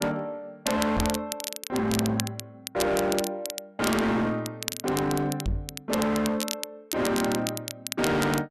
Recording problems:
distorted audio; hard clipping, signal-to-distortion ratio 7 dB
crackle; vinyl, SNR 7 dB
knock on the microphone; at 1 s and at 5.5 s; peak +3 dB vs average level

